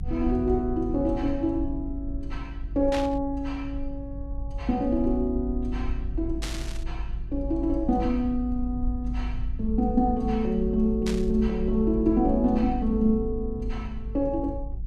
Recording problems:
low-frequency rumble; below 54 Hz, SNR 8 dB
static burst; at 3 s, at 6.5 s and at 11 s; peak -3 dB vs average level

